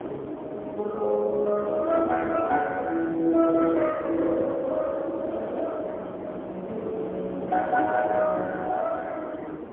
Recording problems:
telephone audio; 280 Hz to 2 kHz, AMR-NB, then MP3
wind noise; below 610 Hz, SNR 10 dB

